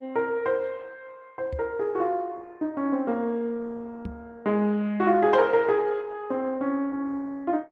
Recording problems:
lossy compression; Opus, log-spectral distance 2 dB
knock on the microphone; at 1.5 s and at 4 s; peak -2 dB vs average level

